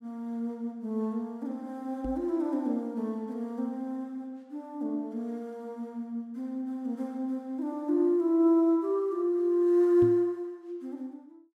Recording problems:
knock on the microphone; at 2 s and at 10 s; peak -1 dB vs average level

